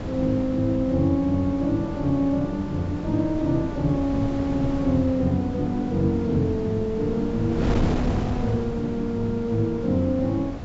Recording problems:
treble cut off; nothing above 8 kHz
wind noise; below 380 Hz, SNR 8 dB

